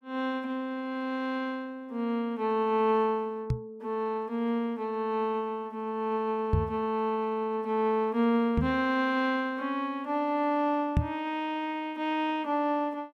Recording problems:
microphone thump; 4 times, first at 3.5 s; peak +7 dB vs average level

